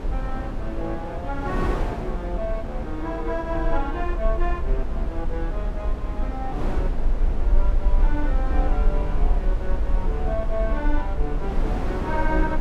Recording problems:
low-frequency rumble; below 44 Hz, strongest tone 26 Hz, SNR -2 dB
wind on the microphone; below 450 Hz, SNR 1 dB

